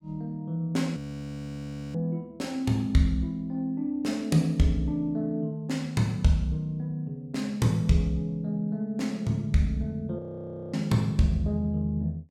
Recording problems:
audio freezing; at 1 s for 1 s and at 10 s for 0.5 s

